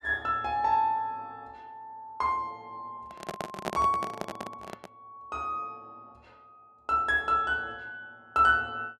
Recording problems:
microphone handling noise; from 3 to 5 s; peak 0 dB vs average level

